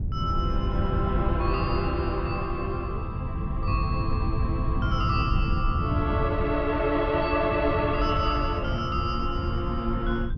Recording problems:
treble missing; nothing above 5.5 kHz
wind on the microphone; below 130 Hz, SNR 1 dB

